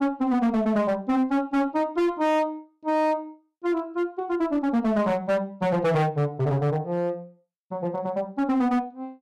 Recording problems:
distorted audio; hard clipping, signal-to-distortion ratio 8 dB

